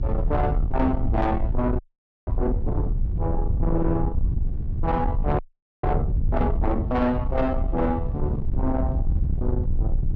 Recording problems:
distorted audio; soft clipping, signal-to-distortion ratio 11 dB
electrical hum; 60 Hz, harmonics up to 1.1 kHz, SNR 18 dB
low-frequency rumble; below 92 Hz, SNR 1 dB
audio freezing; at 2 s and at 5.5 s

